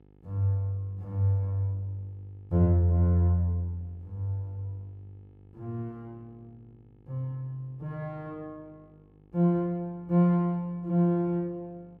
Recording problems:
hum; 50 Hz, harmonics up to 900 Hz, SNR 29 dB

